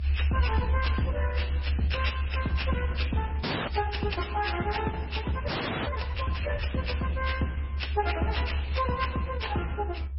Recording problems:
lossy compression; Opus, then MP3, log-spectral distance 4 dB, nothing above 5.5 kHz
low-frequency rumble; below 74 Hz, strongest tone 70 Hz, SNR -3 dB
frozen audio; at 3.5 s and at 5.5 s

